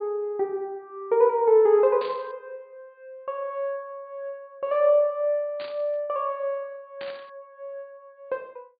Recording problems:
treble missing; nothing above 4.7 kHz
burst of static; at 2 s, at 5.5 s and at 7 s; peak -12 dB vs average level

